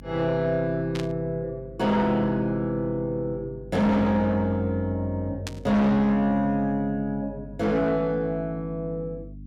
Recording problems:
distorted audio; soft clipping, signal-to-distortion ratio 8 dB
hum; 50 Hz, harmonics up to 300 Hz, SNR 18 dB
static burst; at 1 s and at 5.5 s; peak -5 dB vs average level

